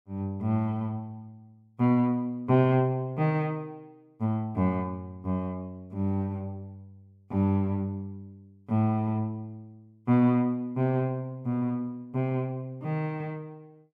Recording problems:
none

